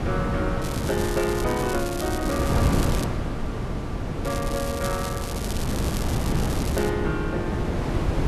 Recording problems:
wind noise; below 360 Hz, SNR -2 dB
crackling; from 0.5 to 3 s and from 4 to 7 s; loose cable, SNR 7 dB

